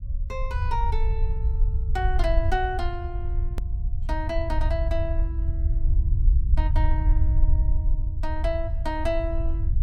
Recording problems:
rumble; below 68 Hz, SNR -5 dB
hard cut with a click; at 3.5 s

